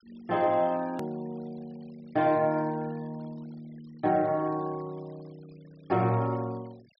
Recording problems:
treble missing; nothing above 5.4 kHz
noise reduction artefacts; signal-to-artefact ratio 27 dB
hard cut with a click; at 1 s

